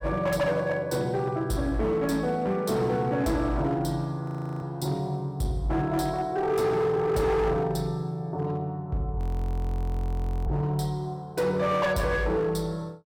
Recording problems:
distortion; hard clipping, signal-to-distortion ratio 11 dB
audio freezing; at 4 s and at 9 s for 1.5 s

